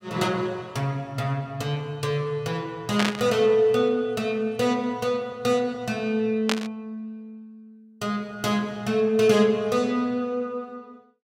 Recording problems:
static burst; at 3 s and at 6.5 s; peak +3 dB vs average level

